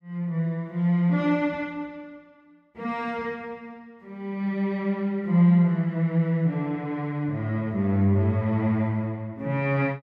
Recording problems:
none

